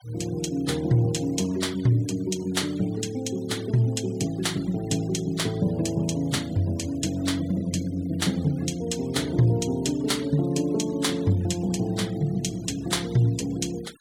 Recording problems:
noise reduction artefacts; signal-to-artefact ratio 21 dB

